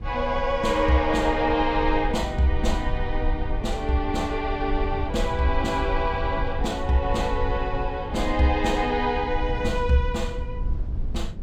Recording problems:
low-frequency rumble; below 70 Hz, SNR 7 dB

